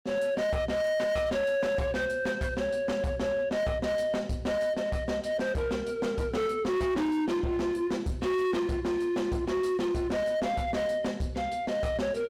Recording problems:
distortion; hard clipping, signal-to-distortion ratio 10 dB

